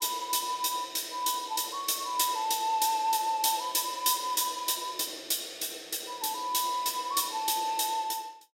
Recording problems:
none

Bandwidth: 16 kHz